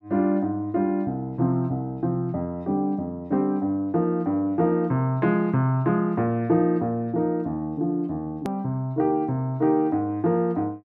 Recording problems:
hard cut with a click; at 8.5 s

